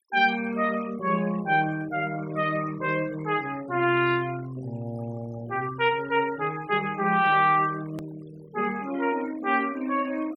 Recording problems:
noise reduction artefacts; signal-to-artefact ratio 19 dB
hard cut with a click; at 8 s

